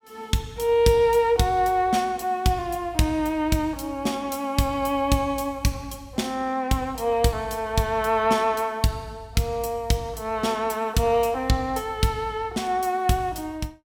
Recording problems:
none

